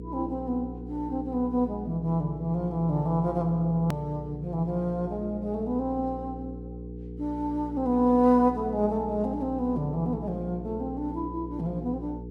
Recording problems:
hum; 60 Hz, harmonics up to 480 Hz, SNR 11 dB
hard cut with a click; at 4 s

